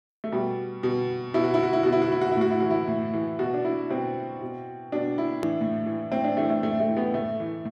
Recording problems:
click at an edit; at 5.5 s

